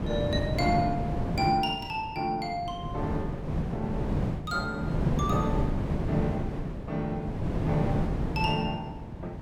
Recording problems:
wind on the microphone; below 290 Hz, SNR 0 dB

